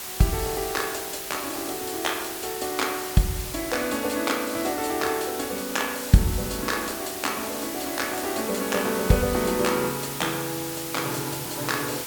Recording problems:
background hiss; slope 0 dB per octave, SNR 5 dB

